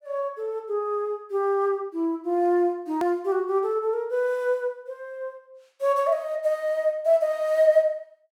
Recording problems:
edit click; at 3 s

